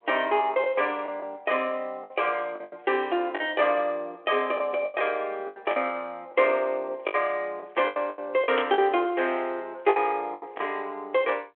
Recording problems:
phone line; 300 Hz to 3.4 kHz, G.726
lost packets; 9% of the sound replaced, filled with the last packet
burst of static; at 8.5 s; peak 0 dB vs average level

